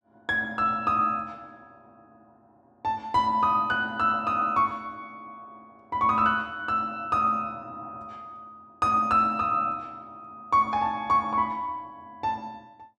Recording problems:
none

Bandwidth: 12.5 kHz